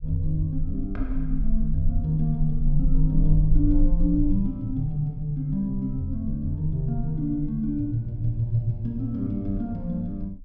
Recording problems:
low-frequency rumble; below 38 Hz, strongest tone 18 Hz, SNR 5 dB

